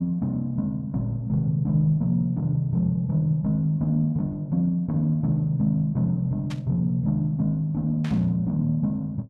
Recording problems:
static burst; at 6.5 s and at 8 s; peak -11 dB vs average level

